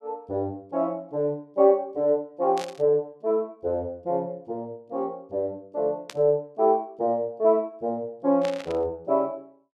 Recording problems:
static burst; at 2.5 s, at 6 s and at 8.5 s; peak -6 dB vs average level

